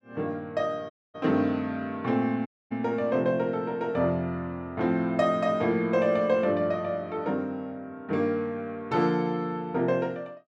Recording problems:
dropout; at 1 s and at 2.5 s

